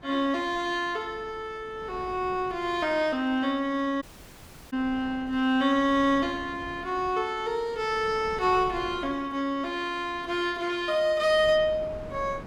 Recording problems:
wind on the microphone; below 610 Hz, SNR 20 dB
dropout; at 4 s for 0.5 s

